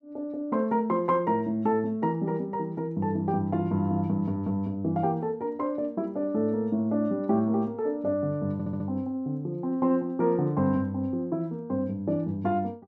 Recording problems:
audio stuttering; at 8.5 s

